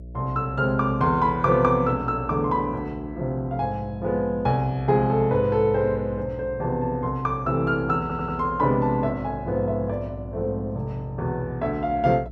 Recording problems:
electrical hum; 60 Hz, harmonics up to 660 Hz, SNR 16 dB
audio stuttering; at 8 s

